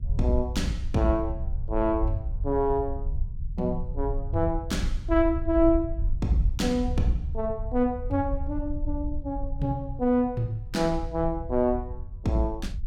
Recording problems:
rumble; below 70 Hz, SNR 6 dB

